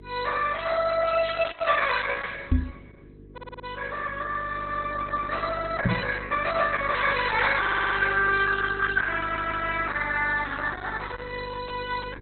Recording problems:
lossy codec; Opus, log-spectral distance 5 dB, nothing above 4.1 kHz
mains hum; 50 Hz, harmonics up to 450 Hz, SNR 19 dB
microphone bump; at 2.5 s and at 6 s; peak +6 dB vs average level
stutter; at 3.5 s, at 7.5 s and at 9 s

